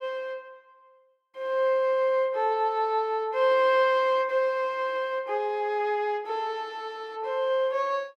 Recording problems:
none

